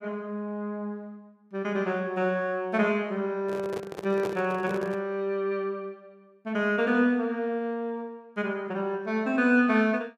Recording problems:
handling noise; from 3.5 to 5 s; peak -3 dB vs average level

